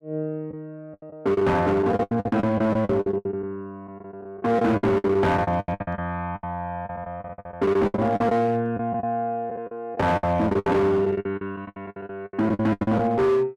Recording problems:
distortion; hard clipping, signal-to-distortion ratio 11 dB
packet loss; 19% of the sound replaced, filled with the last packet

